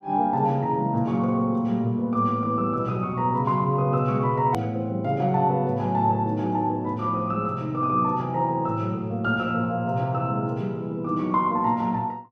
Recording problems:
hard cut with a click; at 4.5 s

